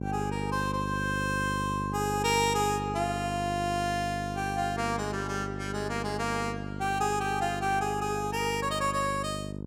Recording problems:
electrical hum; 50 Hz, harmonics up to 650 Hz, SNR 6 dB

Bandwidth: 17 kHz